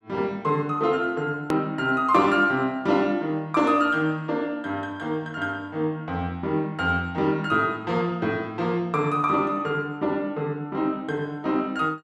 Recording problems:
click at an edit; at 1.5 s

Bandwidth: 12.5 kHz